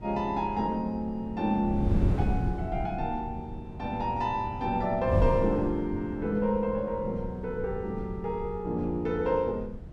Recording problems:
wind on the microphone; below 150 Hz, SNR 6 dB

